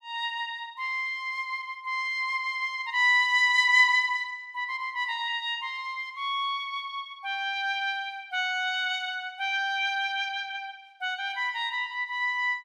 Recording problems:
none

